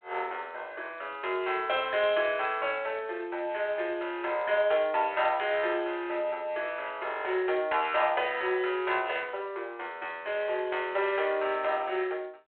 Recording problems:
telephone audio; 320 Hz to 3.4 kHz, G.726

